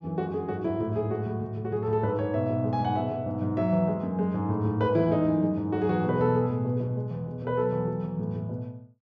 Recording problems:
treble missing; nothing above 8 kHz

